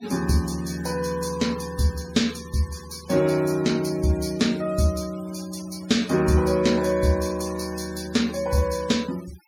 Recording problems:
denoising artefacts; signal-to-artefact ratio 18 dB

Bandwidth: 16.5 kHz